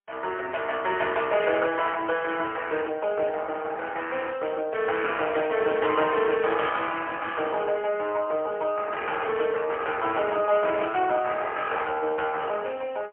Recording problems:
phone line; 340 Hz to 3.3 kHz, AMR-NB, then MP3

